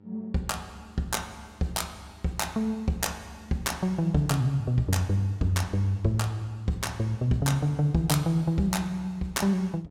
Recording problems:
hum; 50 Hz, harmonics up to 1 kHz, SNR 27 dB

